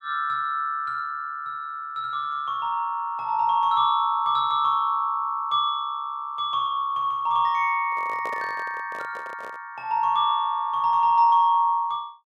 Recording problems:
microphone handling noise; from 8 to 9.5 s; peak -8 dB vs average level

